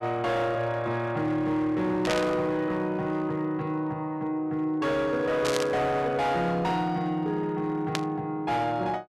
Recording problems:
distorted audio; hard clipping, signal-to-distortion ratio 12 dB
static burst; at 2 s, at 5.5 s and at 8 s; peak +2 dB vs average level

